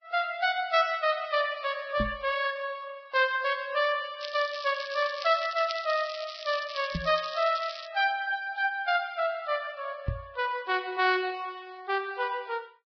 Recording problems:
lossy compression; Vorbis, log-spectral distance 7 dB, nothing above 5.2 kHz
microphone bump; at 2 s, at 7 s and at 10 s; peak +1 dB vs average level
crackling; from 4 to 8 s; loose cable, SNR 12 dB

